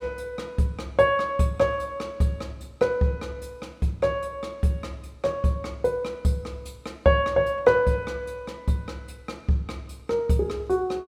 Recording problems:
none

